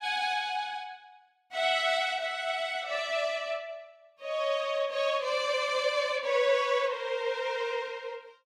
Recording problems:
none

